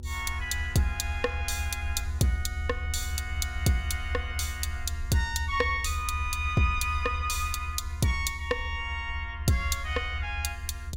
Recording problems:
hum; 60 Hz, harmonics up to 960 Hz, SNR 22 dB
low-frequency rumble; below 78 Hz, SNR 5 dB

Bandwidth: 16.5 kHz